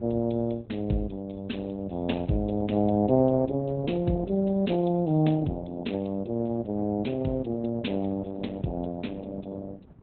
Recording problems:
lossy codec; Opus, log-spectral distance 4 dB, nothing above 4 kHz
wind on the microphone; below 260 Hz, SNR 18 dB

